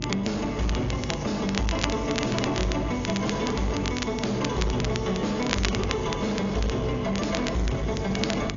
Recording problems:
treble cut off; nothing above 7.1 kHz
lossy codec; AAC, log-spectral distance 4 dB
distortion; soft clipping, signal-to-distortion ratio 6 dB
hum; 50 Hz, harmonics up to 600 Hz, SNR 9 dB
crackling; vinyl, SNR 8 dB

